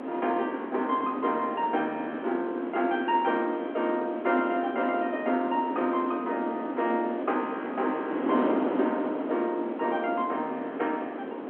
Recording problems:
telephone audio; 220 Hz to 3.5 kHz, G.711
wind on the microphone; below 580 Hz, SNR 4 dB

